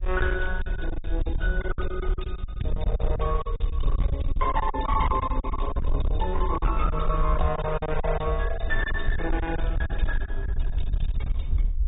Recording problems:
lossy compression; AAC, log-spectral distance 2 dB, nothing above 3.7 kHz
distortion; hard clipping, signal-to-distortion ratio 11 dB
rumble; below 58 Hz, SNR 0 dB
packet loss; 15% of the sound replaced, filled with silence
crackling; at 9.5 s; loose cable, SNR 27 dB

